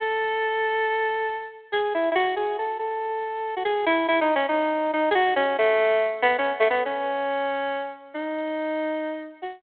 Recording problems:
phone line; 280 Hz to 3.9 kHz, G.726

